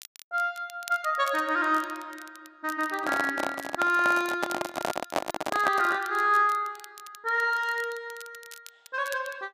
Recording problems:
crackling; vinyl, SNR 20 dB
handling noise; from 3 to 6 s; peak +4 dB vs average level

